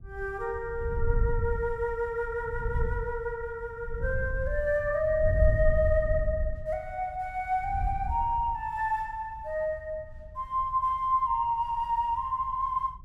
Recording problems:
wind noise; below 84 Hz, SNR 4 dB

